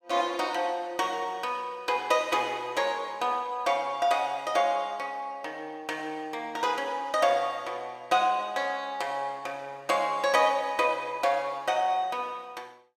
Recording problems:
none

